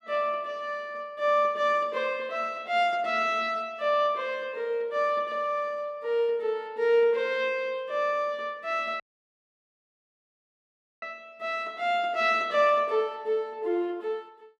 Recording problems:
audio cutting out; at 9 s for 2 s

